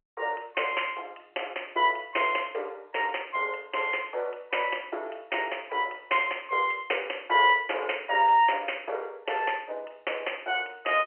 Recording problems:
telephone audio; 340 Hz to 3.1 kHz, G.711

